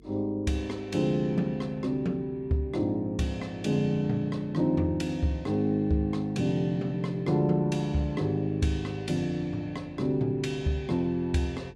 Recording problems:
hum; 50 Hz, harmonics up to 450 Hz, SNR 27 dB

